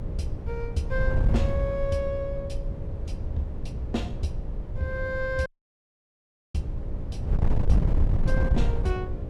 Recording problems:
mains hum; 60 Hz, harmonics up to 600 Hz, SNR 11 dB
wind noise; below 92 Hz, SNR -3 dB
audio cutting out; at 5.5 s for 1 s

